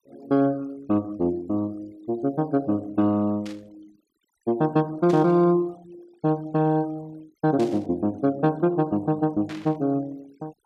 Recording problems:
noise reduction artefacts; signal-to-artefact ratio 27 dB
static burst; 4 times, first at 3.5 s; peak -11 dB vs average level

